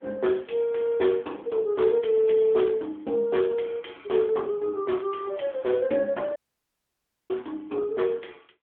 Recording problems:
phone line; 260 Hz to 3.5 kHz, AMR-NB
audio cutting out; at 6.5 s for 1 s

